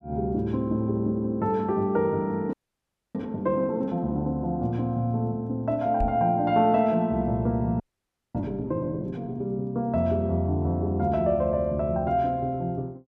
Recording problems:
frozen audio; at 2.5 s for 0.5 s and at 8 s for 0.5 s
knock on the microphone; at 6 s; peak 0 dB vs average level

